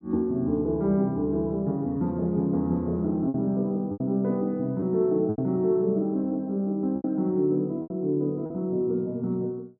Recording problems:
lost packets; 5% of the sound replaced, filled with repeated pitch periods

